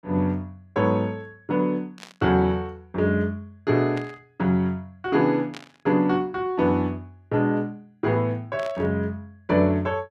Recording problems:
burst of static; 4 times, first at 2 s; peak -10 dB vs average level

